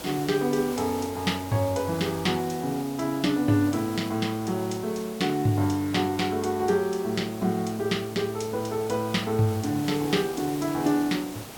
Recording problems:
background hiss; slope -4 dB per octave, SNR 14 dB

